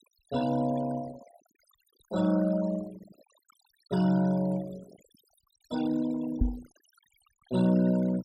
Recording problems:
denoising artefacts; signal-to-artefact ratio 17 dB
microphone thump; at 6.5 s; peak +6 dB vs average level

